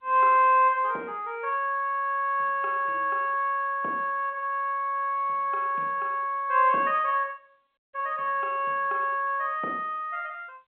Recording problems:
phone line; 260 Hz to 3.6 kHz, G.711

